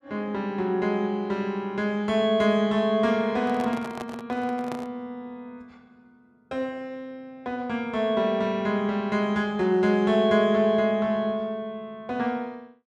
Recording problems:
handling noise; from 3.5 to 5 s; peak -7 dB vs average level

